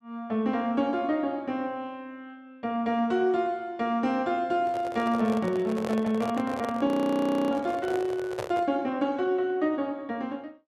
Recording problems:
handling noise; from 4.5 to 8.5 s; peak -2 dB vs average level
frozen audio; at 7 s for 0.5 s

